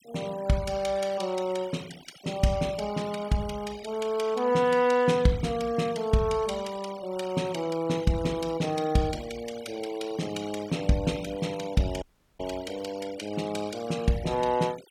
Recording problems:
noise reduction artefacts; signal-to-artefact ratio 19 dB
dropout; at 12 s

